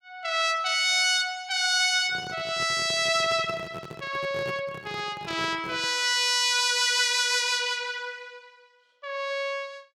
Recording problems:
handling noise; from 2 to 6 s; peak -9 dB vs average level

